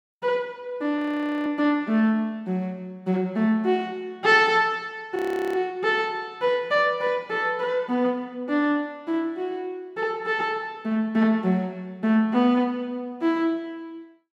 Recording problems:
frozen audio; at 1 s and at 5 s

